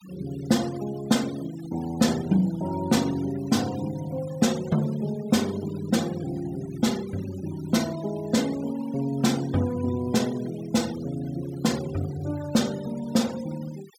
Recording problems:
denoising artefacts; signal-to-artefact ratio 16 dB

